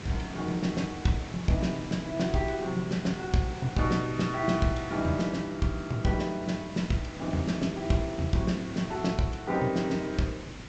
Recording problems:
treble missing; nothing above 8 kHz
hum; 50 Hz, harmonics up to 600 Hz, SNR 25 dB
background hiss; slope -4 dB per octave, SNR 12 dB

